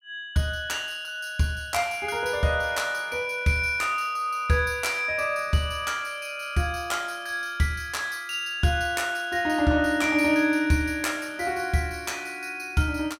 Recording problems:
none

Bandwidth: 16 kHz